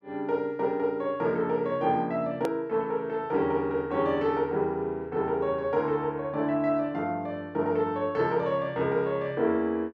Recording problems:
edit click; at 2.5 s

